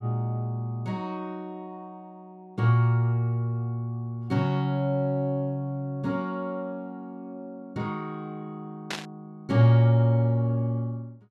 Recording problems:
static burst; at 9 s; peak -2 dB vs average level

